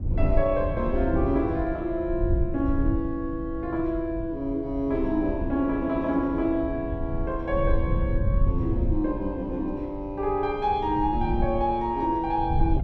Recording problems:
low-frequency rumble; below 96 Hz, SNR 5 dB

